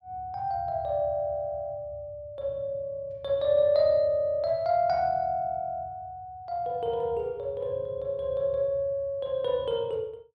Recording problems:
none

